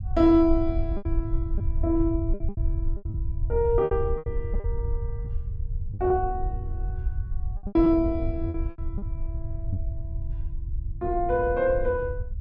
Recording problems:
low-frequency rumble; below 80 Hz, SNR 6 dB
lost packets; 10% of the sound replaced, filled with repeated pitch periods

